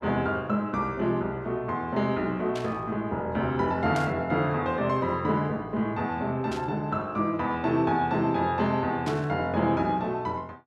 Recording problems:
static burst; 4 times, first at 2.5 s; peak -7 dB vs average level

